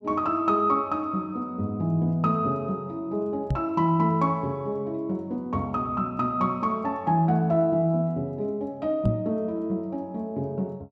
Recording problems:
microphone bump; at 3.5 s and at 9 s; peak +4 dB vs average level

